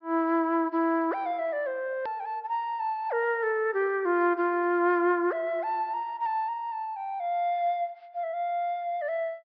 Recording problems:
treble missing; nothing above 5.5 kHz
edit click; at 2 s

